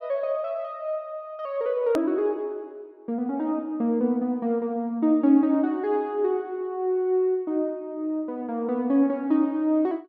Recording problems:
click at an edit; at 2 s

